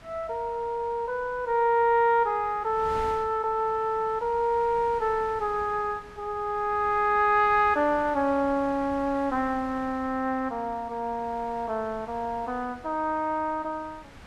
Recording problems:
wind noise; below 1.7 kHz, SNR 21 dB

